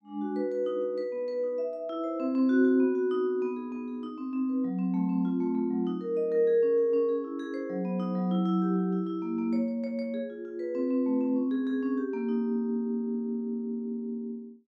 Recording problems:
none

